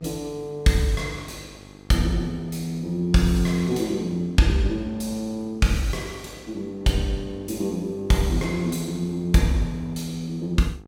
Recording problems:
hum; 50 Hz, harmonics up to 1.6 kHz, SNR 23 dB

